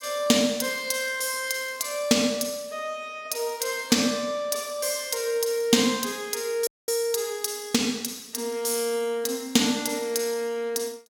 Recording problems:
audio cutting out; at 6.5 s

